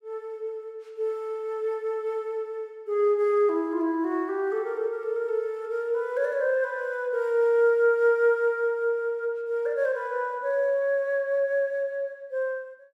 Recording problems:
none

